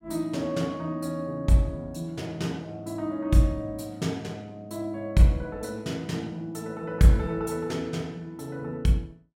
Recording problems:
none

